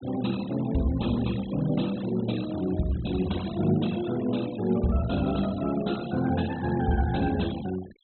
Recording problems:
treble cut off; nothing above 4.1 kHz
noise reduction artefacts; signal-to-artefact ratio 17 dB

